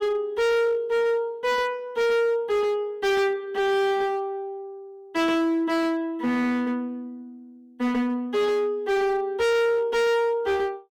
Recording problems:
distorted audio; hard clipping, uneven, signal-to-distortion ratio 6 dB

